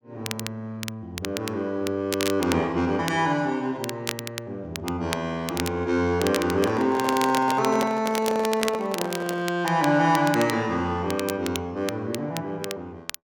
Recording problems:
crackling; vinyl, SNR 10 dB
handling noise; from 6.5 to 9.5 s; peak 0 dB vs average level

